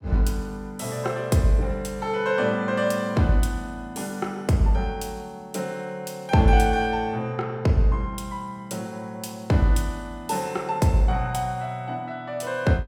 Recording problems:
none

